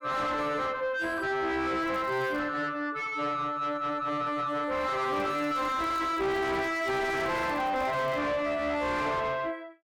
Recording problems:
distortion; soft clipping, signal-to-distortion ratio 5 dB
crackle; at 2 s, from 5 to 6.5 s and from 6.5 to 8 s; loose cable, SNR 29 dB

